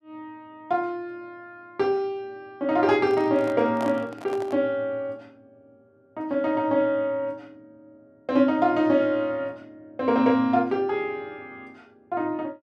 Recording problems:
handling noise; from 3 to 4.5 s; peak -7 dB vs average level

